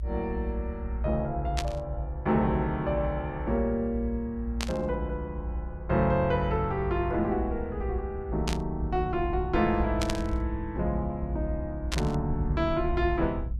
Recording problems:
low-frequency rumble; below 68 Hz, strongest tone 58 Hz, SNR 6 dB
static burst; 5 times, first at 1.5 s; peak +2 dB vs average level

